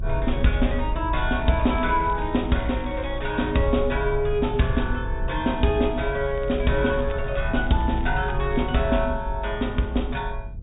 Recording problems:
treble missing; nothing above 4 kHz
rumble; below 68 Hz, SNR 7 dB
crackle; from 2 to 3.5 s and from 6.5 to 8.5 s; loose cable, SNR 24 dB

